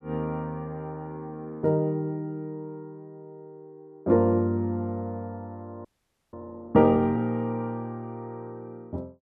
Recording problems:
audio freezing; at 6 s

